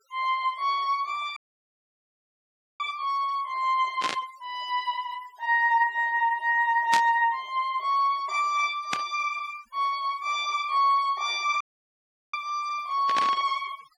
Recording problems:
noise reduction artefacts; signal-to-artefact ratio 23 dB
dropout; at 1.5 s for 1.5 s and at 12 s for 0.5 s
static burst; 4 times, first at 4 s; peak +2 dB vs average level

